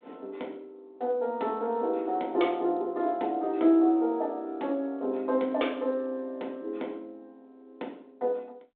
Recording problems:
phone line; 240 Hz to 3.7 kHz, G.726

